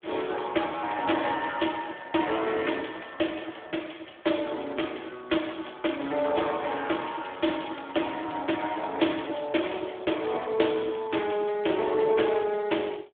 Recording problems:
phone line; 280 Hz to 3.5 kHz, Speex

